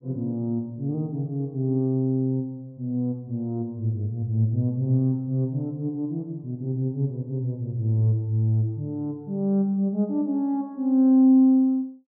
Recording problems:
none

